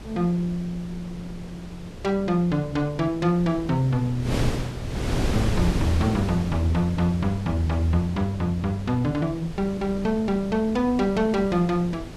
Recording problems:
wind noise; below 370 Hz, SNR 8 dB

